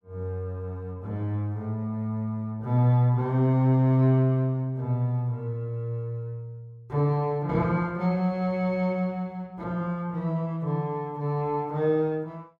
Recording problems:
none

